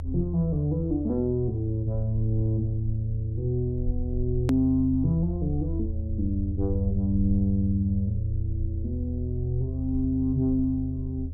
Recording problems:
electrical hum; 60 Hz, harmonics up to 600 Hz, SNR 28 dB
low-frequency rumble; below 82 Hz, strongest tone 80 Hz, SNR 6 dB
edit click; at 4.5 s

